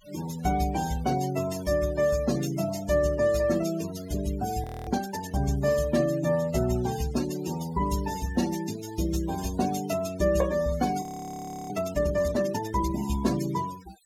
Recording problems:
denoising artefacts; signal-to-artefact ratio 14 dB
audio freezing; at 4.5 s and at 11 s for 0.5 s

